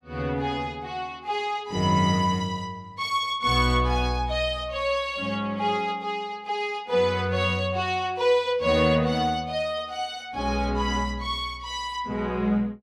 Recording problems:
none

